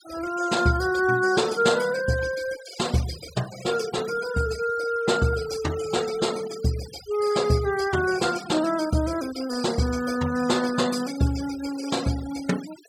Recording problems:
noise reduction artefacts; signal-to-artefact ratio 16 dB

